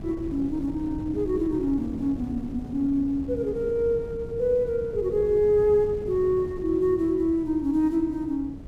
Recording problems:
wind noise; below 240 Hz, SNR 14 dB

